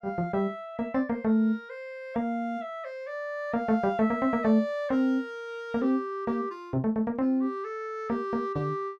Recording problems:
none

